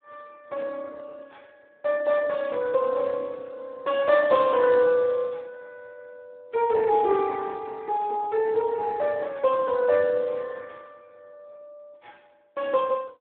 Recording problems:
phone line; 170 Hz to 2.6 kHz, Speex

